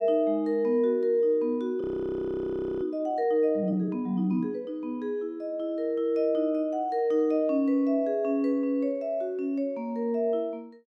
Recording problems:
frozen audio; at 2 s for 1 s

